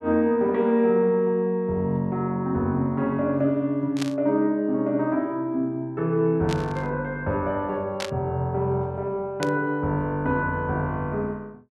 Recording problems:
static burst; 4 times, first at 4 s; peak -2 dB vs average level

